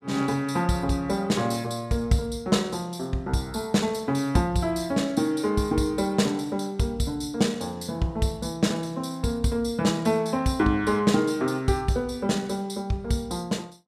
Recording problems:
none

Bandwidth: 15.5 kHz